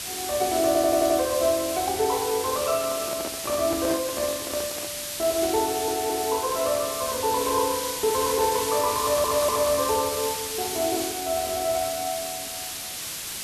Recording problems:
background hiss; slope +2 dB per octave, SNR 4 dB
audio stuttering; at 0.5 s, at 5.5 s and at 9 s
handling noise; from 3 to 5 s; peak -3 dB vs average level

